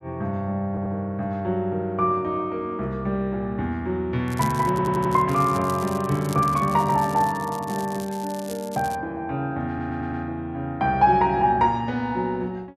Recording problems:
stutter; at 0.5 s, at 4.5 s and at 9.5 s
crackling; from 4.5 to 9 s; loose cable, SNR 17 dB

